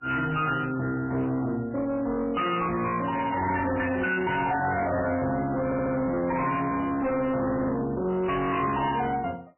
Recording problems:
lossy compression; MP3, log-spectral distance 4 dB, nothing above 2.9 kHz
distorted audio; hard clipping, uneven, signal-to-distortion ratio 7 dB
stutter; at 5.5 s

